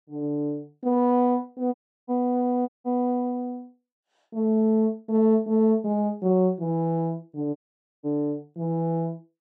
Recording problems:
dropout; at 1.5 s, at 2.5 s and at 7.5 s

